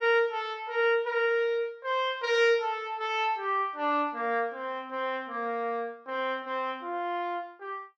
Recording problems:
none

